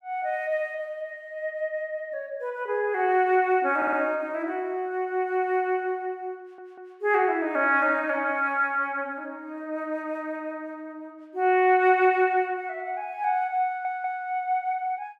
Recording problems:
stutter; at 4 s, at 6.5 s and at 14 s

